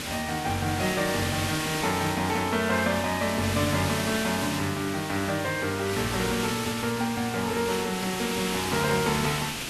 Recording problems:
background hiss; SNR 4 dB

